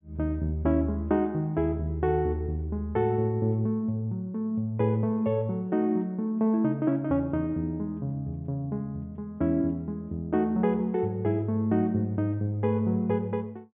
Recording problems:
treble cut off; nothing above 3.6 kHz

